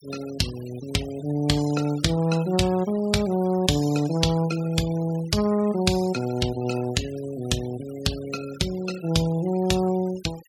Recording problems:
noise reduction artefacts; signal-to-artefact ratio 17 dB

